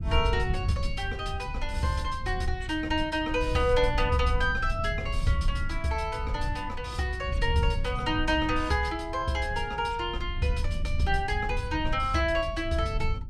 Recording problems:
low-frequency rumble; below 86 Hz, SNR 5 dB

